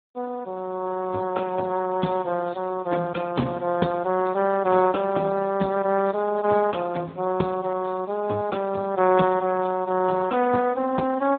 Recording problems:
telephone audio; 130 Hz to 2.1 kHz, Speex

